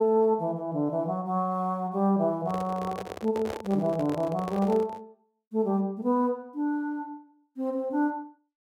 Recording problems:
handling noise; from 2.5 to 5 s; peak -4 dB vs average level

